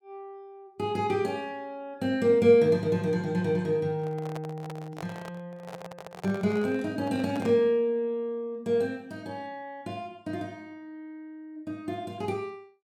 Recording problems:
handling noise; from 4 to 7.5 s; peak -8 dB vs average level

